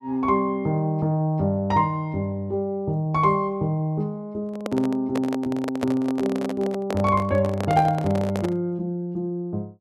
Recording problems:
handling noise; from 4.5 to 8.5 s; peak -1 dB vs average level

